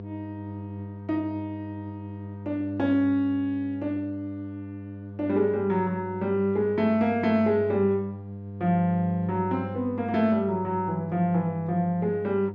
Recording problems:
hum; 50 Hz, harmonics up to 700 Hz, SNR 12 dB

